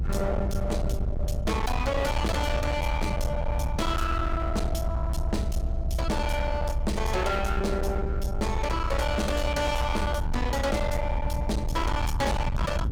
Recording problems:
distorted audio; hard clipping, signal-to-distortion ratio 8 dB
hum; 50 Hz, harmonics up to 550 Hz, SNR 20 dB
rumble; below 110 Hz, SNR 1 dB

